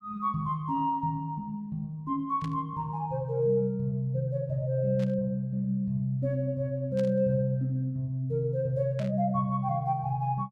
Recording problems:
static burst; 4 times, first at 2.5 s; peak -12 dB vs average level

